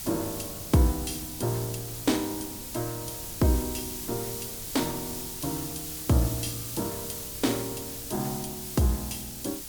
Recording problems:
hiss; slope +2 dB per octave, SNR 5 dB
wind noise; below 250 Hz, SNR 18 dB

